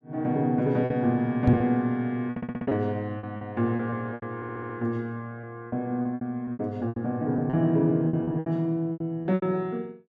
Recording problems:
packet loss; 12% of the sound replaced, filled with repeated pitch periods
knock on the microphone; at 1.5 s; peak +6 dB vs average level
audio stuttering; at 2.5 s and at 4.5 s

